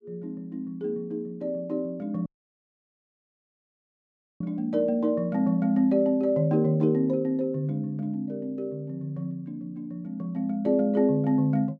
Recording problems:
dropout; at 2.5 s for 2 s

